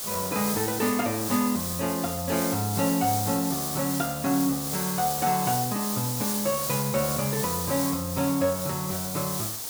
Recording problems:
background hiss; SNR 2 dB

